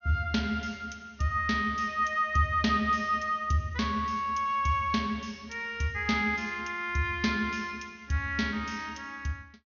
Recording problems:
treble missing; nothing above 6.5 kHz

